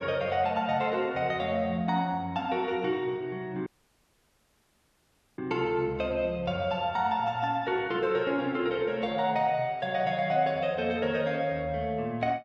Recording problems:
audio cutting out; at 3.5 s for 1.5 s

